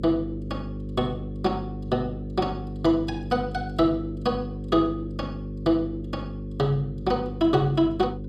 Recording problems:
electrical hum; 50 Hz, harmonics up to 550 Hz, SNR 8 dB

